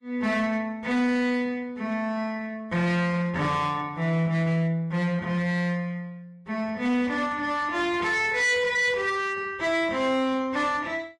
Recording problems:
lossy codec; Vorbis, log-spectral distance 2 dB
distorted audio; hard clipping, signal-to-distortion ratio 12 dB

